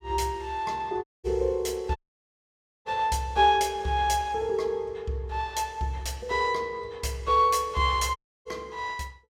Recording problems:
audio cutting out; at 1 s, at 2 s for 1 s and at 8 s

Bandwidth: 16 kHz